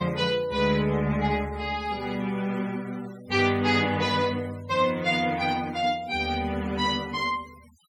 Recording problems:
noise reduction artefacts; signal-to-artefact ratio 23 dB

